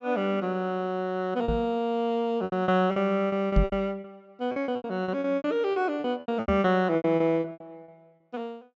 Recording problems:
treble cut off; nothing above 8 kHz
lost packets; 16% of the sound replaced, filled with repeated pitch periods
microphone bump; at 1.5 s, at 3.5 s and at 6.5 s; peak +7 dB vs average level

